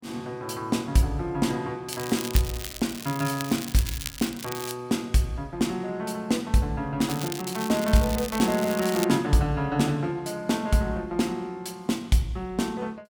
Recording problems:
crackle; from 2 to 4.5 s and from 7 to 9 s; loose cable, SNR 9 dB

